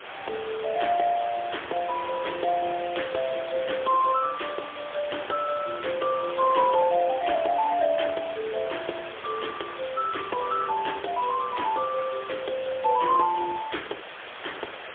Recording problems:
telephone audio; 340 Hz to 3.4 kHz, AMR-NB, then MP3
background hiss; SNR 12 dB

